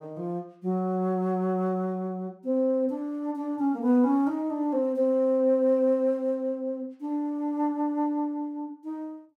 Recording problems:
none

